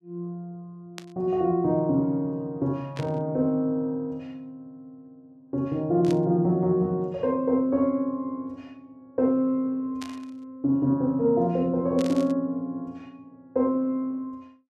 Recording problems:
burst of static; 5 times, first at 1 s; peak -9 dB vs average level

